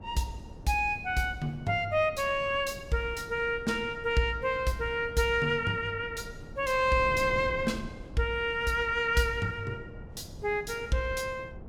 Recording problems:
wind on the microphone; below 270 Hz, SNR 16 dB

